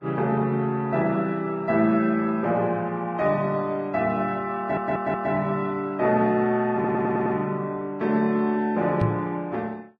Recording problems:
lossy codec; Vorbis, log-spectral distance 2 dB
stutter; at 4.5 s and at 6.5 s
knock on the microphone; at 9 s; peak +5 dB vs average level

